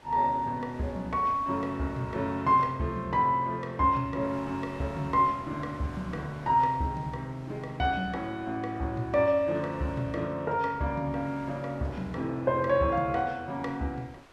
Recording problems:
wind noise; below 2.2 kHz, SNR 23 dB

